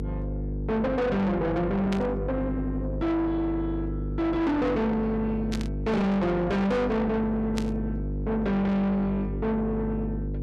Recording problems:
distorted audio; soft clipping, signal-to-distortion ratio 6 dB
hum; 50 Hz, harmonics up to 500 Hz, SNR 6 dB
static burst; at 2 s, at 5.5 s and at 7.5 s; peak -5 dB vs average level

